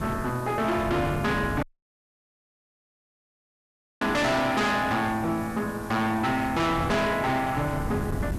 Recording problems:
distorted audio; hard clipping, signal-to-distortion ratio 6 dB
hiss; slope -4 dB per octave, SNR 20 dB
wind noise; below 280 Hz, SNR 11 dB
audio cutting out; at 1.5 s for 2.5 s

